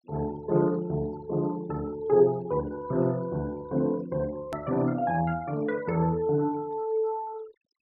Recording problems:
treble missing; nothing above 5.5 kHz
denoising artefacts; signal-to-artefact ratio 25 dB
hard cut with a click; at 4.5 s

